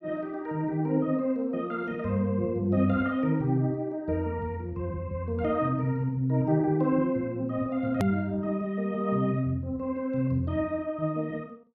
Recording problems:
edit click; at 8 s

